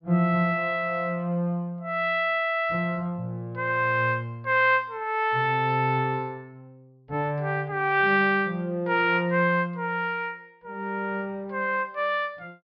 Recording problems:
treble cut off; nothing above 5.5 kHz

